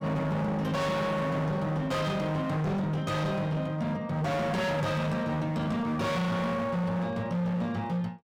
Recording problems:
distorted audio; hard clipping, signal-to-distortion ratio 6 dB

